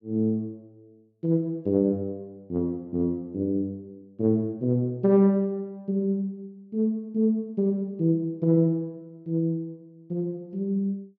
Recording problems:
none

